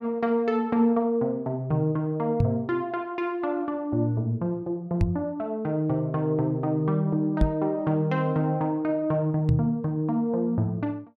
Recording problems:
knock on the microphone; 4 times, first at 2.5 s; peak +7 dB vs average level

